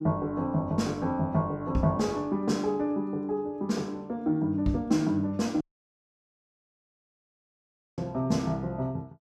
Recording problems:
audio cutting out; at 5.5 s for 2.5 s

